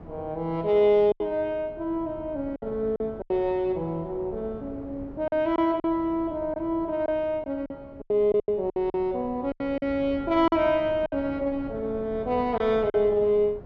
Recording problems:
wind on the microphone; below 450 Hz, SNR 18 dB
lost packets; 8% of the sound replaced, filled with silence

